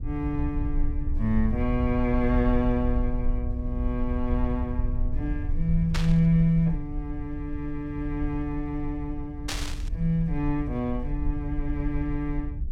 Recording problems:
rumble; below 64 Hz, SNR 4 dB
burst of static; at 6 s and at 9.5 s; peak +1 dB vs average level

